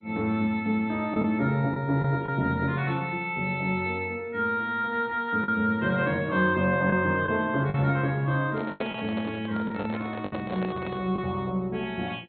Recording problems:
codec artefacts; MP2, log-spectral distance 2 dB, nothing above 3.8 kHz
lost packets; 4% of the sound replaced, filled with the last packet
microphone handling noise; from 8.5 to 11 s; peak -2 dB vs average level

